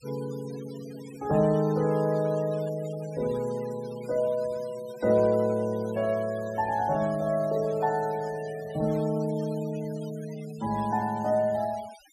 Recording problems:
noise reduction artefacts; signal-to-artefact ratio 20 dB

